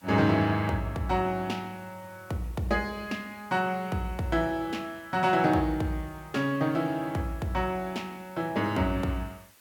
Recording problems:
background hiss; slope 0 dB per octave, SNR 27 dB

